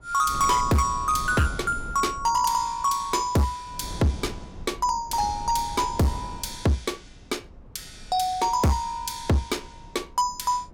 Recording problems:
distorted audio; hard clipping, signal-to-distortion ratio 10 dB
wind on the microphone; below 210 Hz, SNR 16 dB

